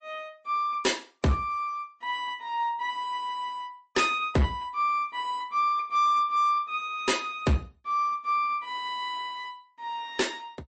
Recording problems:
lossy compression; MP3, log-spectral distance 2 dB, nothing above 8.2 kHz
distortion; hard clipping, uneven, signal-to-distortion ratio 11 dB

